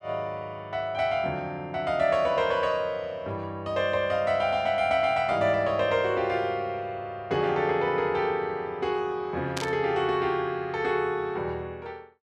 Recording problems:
static burst; at 9.5 s; peak -2 dB vs average level

